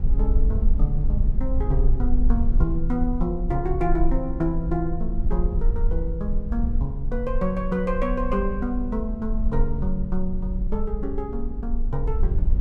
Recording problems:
rumble; below 50 Hz, strongest tone 18 Hz, SNR -1 dB

